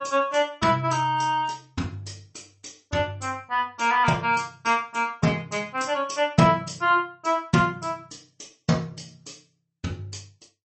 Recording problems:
lossy compression; MP3, log-spectral distance 5 dB, nothing above 8.2 kHz

